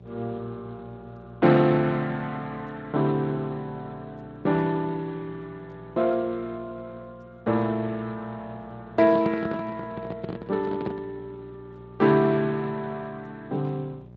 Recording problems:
lossy codec; G.722, then Speex, log-spectral distance 3 dB
hum; 60 Hz, harmonics up to 780 Hz, SNR 21 dB
microphone handling noise; from 9 to 11 s; peak -1 dB vs average level

